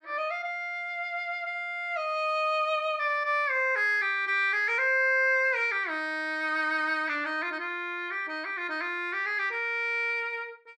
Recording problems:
none

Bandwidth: 13.5 kHz